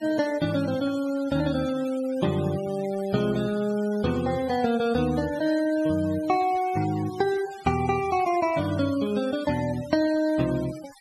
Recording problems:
noise reduction artefacts; signal-to-artefact ratio 18 dB

